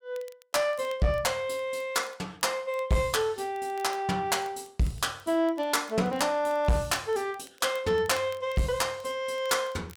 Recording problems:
distortion; soft clipping, signal-to-distortion ratio 11 dB
crackling; vinyl, SNR 27 dB

